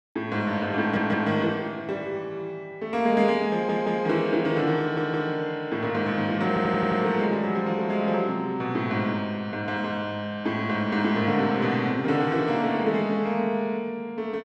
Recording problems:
stutter; 4 times, first at 1 s

